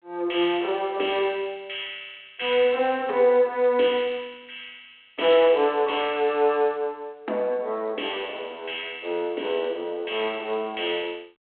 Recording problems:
telephone audio; 300 Hz to 3.5 kHz, G.726

